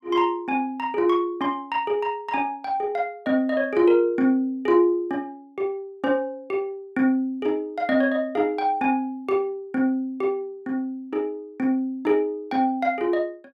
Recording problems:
none

